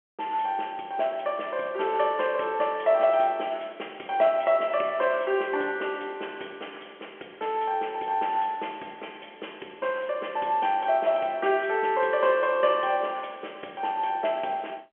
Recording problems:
phone line; 280 Hz to 3.3 kHz, G.711

